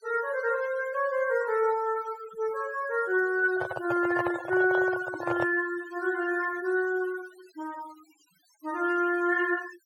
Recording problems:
denoising artefacts; signal-to-artefact ratio 18 dB
microphone handling noise; from 3.5 to 5.5 s; peak 0 dB vs average level

